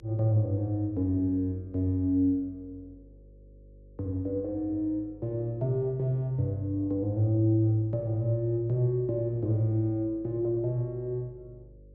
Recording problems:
low-pass filter; nothing above 8 kHz
mains hum; 50 Hz, harmonics up to 550 Hz, SNR 25 dB

